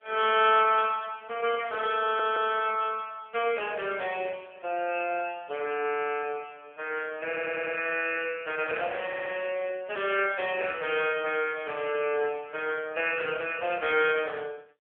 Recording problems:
phone line; 320 Hz to 3.3 kHz, AMR-NB
audio stuttering; at 2 s, at 7.5 s and at 9 s
static burst; at 4.5 s; peak -18 dB vs average level

